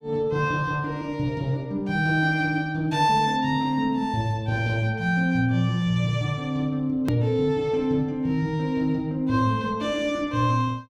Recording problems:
hard cut with a click; at 7 s

